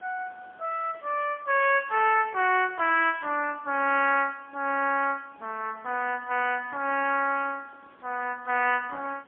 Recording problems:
telephone audio; 320 Hz to 3.2 kHz, AMR-NB, then MP3
hiss; SNR 30 dB

